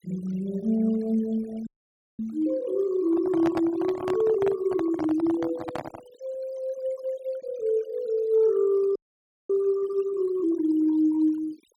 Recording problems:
denoising artefacts; signal-to-artefact ratio 23 dB
frozen audio; at 1.5 s for 0.5 s and at 9 s for 0.5 s
handling noise; from 3 to 6 s; peak -1 dB vs average level

